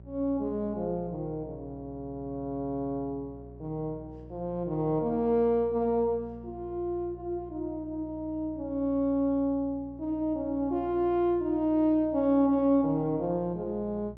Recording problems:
electrical hum; 60 Hz, harmonics up to 600 Hz, SNR 19 dB

